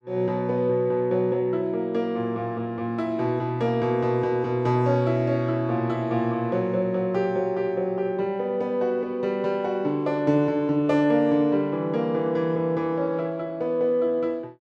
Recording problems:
none

